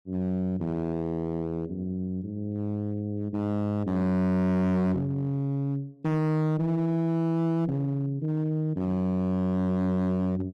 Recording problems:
distortion; hard clipping, signal-to-distortion ratio 7 dB

